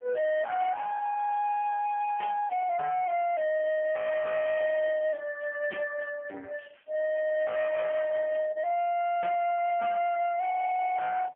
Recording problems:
phone line; 800 Hz to 3.2 kHz, AMR-NB, then MP3
distortion; soft clipping, signal-to-distortion ratio 10 dB

